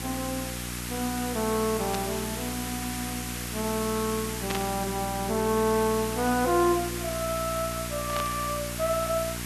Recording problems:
hum; 60 Hz, harmonics up to 780 Hz, SNR 8 dB
background hiss; SNR 5 dB
static burst; at 2 s, at 4.5 s and at 8 s; peak 0 dB vs average level

